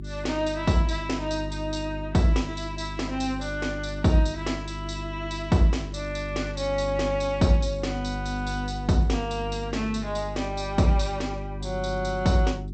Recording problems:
lossy compression; G.722, log-spectral distance 4 dB, nothing above 8.2 kHz
electrical hum; 50 Hz, harmonics up to 400 Hz, SNR 9 dB

